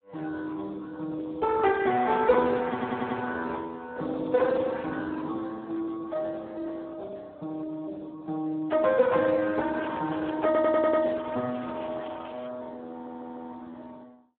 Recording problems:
telephone audio; 170 Hz to 2 kHz, Speex
stutter; at 2.5 s, at 10 s and at 13 s
crackle; from 9.5 to 12 s; loose cable, SNR 27 dB

